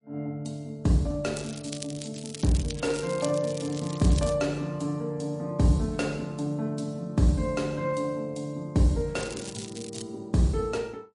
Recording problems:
lossy compression; MP3, log-spectral distance 5 dB, nothing above 10.4 kHz
crackle; from 1.5 to 4.5 s and at 9 s; loose cable, SNR 13 dB

